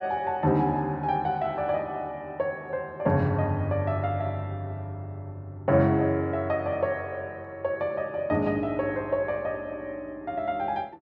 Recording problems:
none

